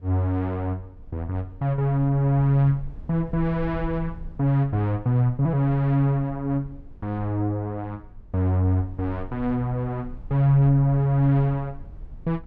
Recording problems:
low-frequency rumble; below 62 Hz, SNR 19 dB

